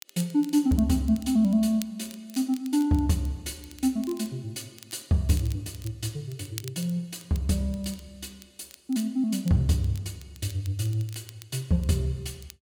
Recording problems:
crackle; vinyl, SNR 21 dB

